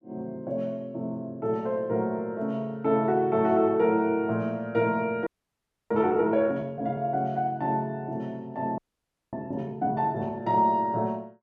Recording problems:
audio freezing; at 5.5 s for 0.5 s and at 9 s for 0.5 s

